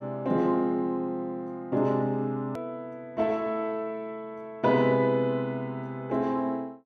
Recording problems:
hard cut with a click; at 2.5 s

